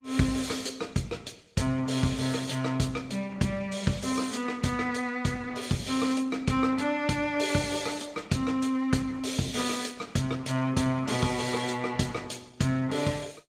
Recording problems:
lossy compression; Opus, log-spectral distance 4 dB, nothing above 15.5 kHz

